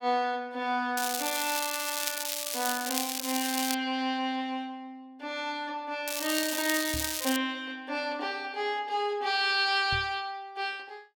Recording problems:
crackle; from 1 to 3.5 s and from 6 to 7.5 s; loose cable, SNR 1 dB
microphone bump; at 7 s and at 10 s; peak -4 dB vs average level

